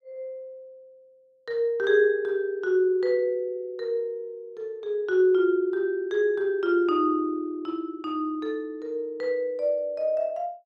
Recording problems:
none

